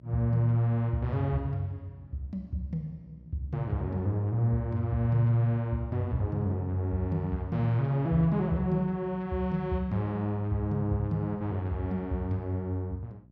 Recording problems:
electrical hum; 60 Hz, harmonics up to 660 Hz, SNR 26 dB

